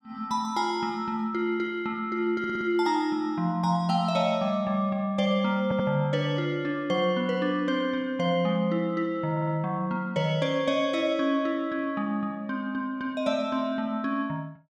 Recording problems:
stutter; at 2.5 s, at 5.5 s and at 9.5 s

